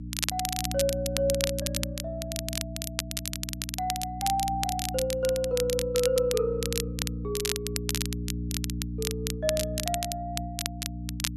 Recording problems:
hum; 60 Hz, harmonics up to 300 Hz, SNR 5 dB
crackling; vinyl, SNR 3 dB

